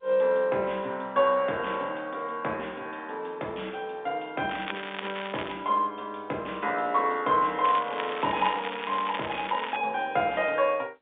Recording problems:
telephone audio; 300 Hz to 3.6 kHz, G.711
crackling; from 4.5 to 5.5 s and from 7.5 to 10 s; loose cable, SNR 9 dB

